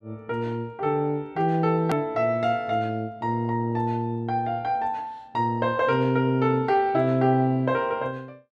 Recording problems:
hard cut with a click; at 2 s

